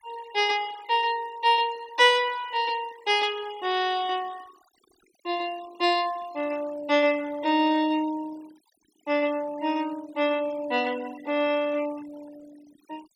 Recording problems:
noise reduction artefacts; signal-to-artefact ratio 21 dB

